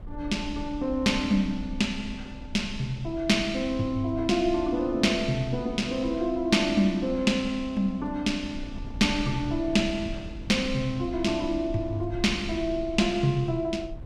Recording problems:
wind on the microphone; below 90 Hz, SNR 15 dB

